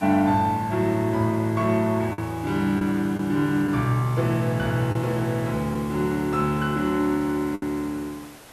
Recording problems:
background hiss; slope -3 dB per octave, SNR 20 dB
lost packets; 3% of the sound replaced, filled with the last packet

